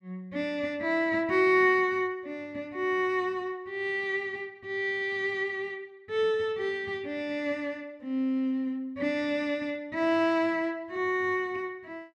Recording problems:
none

